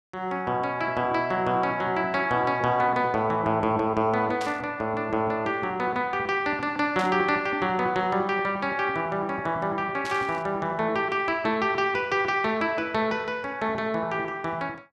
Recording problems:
static burst; at 4.5 s, at 7 s and at 10 s; peak -6 dB vs average level

